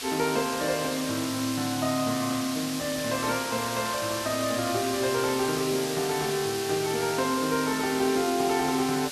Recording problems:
background hiss; slope +2 dB per octave, SNR 6 dB

